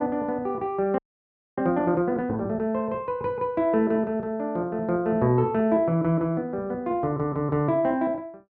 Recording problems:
audio freezing; at 1 s for 0.5 s

